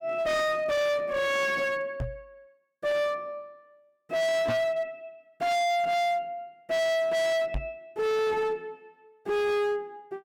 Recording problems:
distortion; hard clipping, uneven, signal-to-distortion ratio 6 dB
knock on the microphone; at 2 s, at 4.5 s and at 7.5 s; peak +1 dB vs average level

